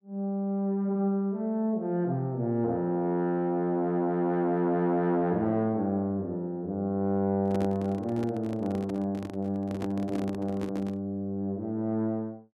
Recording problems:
handling noise; from 7.5 to 11 s; peak -4 dB vs average level

